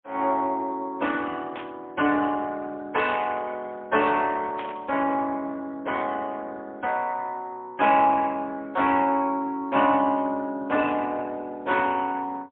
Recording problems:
telephone audio; 220 Hz to 3.5 kHz, AMR-NB, then MP3
static burst; at 1.5 s and at 4.5 s; peak -9 dB vs average level

